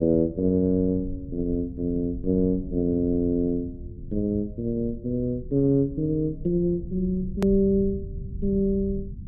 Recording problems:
rumble; below 120 Hz, SNR 13 dB
edit click; at 7.5 s

